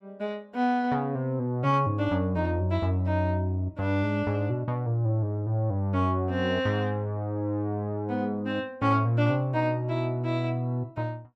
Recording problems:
none

